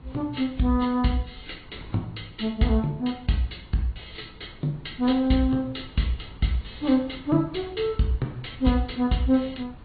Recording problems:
treble cut off; nothing above 4.4 kHz
codec artefacts; MP3, then AAC, log-spectral distance 3 dB
wind on the microphone; below 220 Hz, SNR 21 dB

